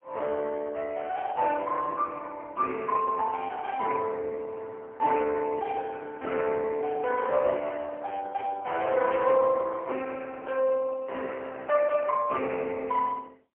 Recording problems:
phone line; 340 Hz to 2 kHz, AMR-NB, then MP3

